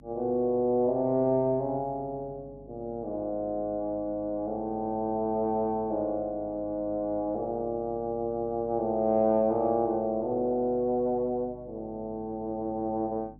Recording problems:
hum; 50 Hz, harmonics up to 300 Hz, SNR 22 dB

